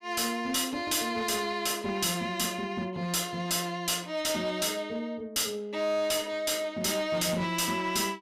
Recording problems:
distorted audio; hard clipping, uneven, signal-to-distortion ratio 10 dB

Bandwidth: 15.5 kHz